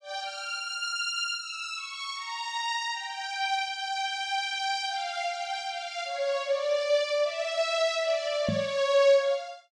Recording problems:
microphone thump; at 8.5 s; peak +2 dB vs average level

